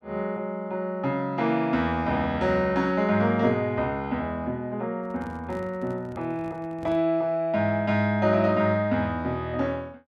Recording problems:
microphone handling noise; from 5 to 7 s; peak -12 dB vs average level

